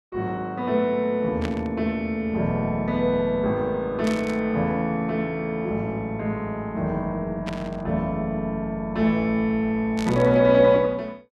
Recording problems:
burst of static; 4 times, first at 1.5 s; peak -6 dB vs average level

